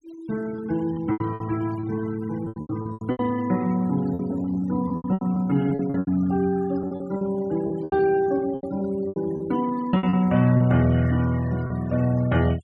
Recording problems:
noise reduction artefacts; signal-to-artefact ratio 18 dB
lost packets; 13% of the sound replaced, filled with repeated pitch periods

